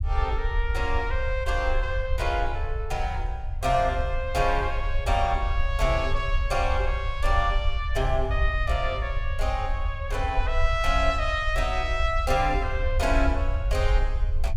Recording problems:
rumble; below 66 Hz, SNR 2 dB

